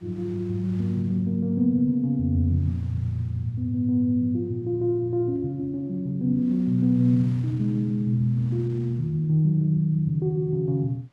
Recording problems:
wind noise; below 2.3 kHz, SNR 30 dB

